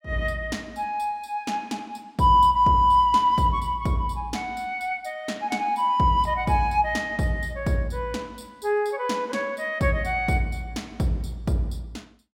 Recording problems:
none

